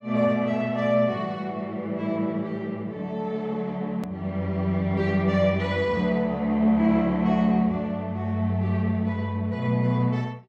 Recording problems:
edit click; at 4 s

